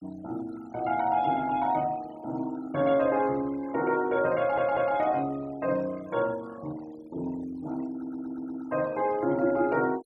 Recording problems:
denoising artefacts; signal-to-artefact ratio 21 dB
audio stuttering; at 4.5 s and at 8 s

